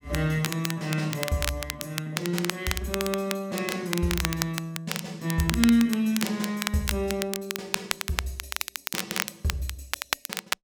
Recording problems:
crackling; vinyl, SNR 4 dB

